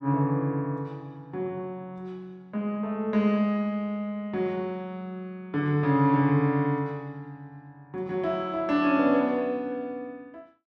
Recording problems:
none

